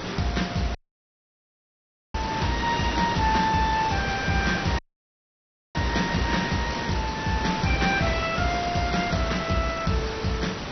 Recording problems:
lossy compression; MP2, log-spectral distance 16 dB, nothing above 6 kHz
background hiss; slope -4 dB per octave, SNR 4 dB
audio cutting out; at 1 s for 1.5 s and at 5 s for 1 s

